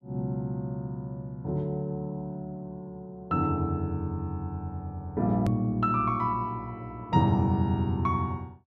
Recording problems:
edit click; at 5.5 s

